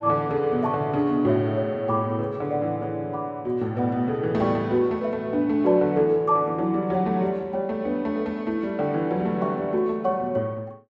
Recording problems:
none

